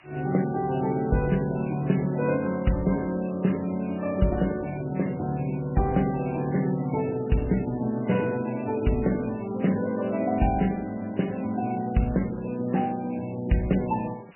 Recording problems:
lossy compression; MP3, log-spectral distance 10 dB, nothing above 2.9 kHz
background hiss; SNR 28 dB

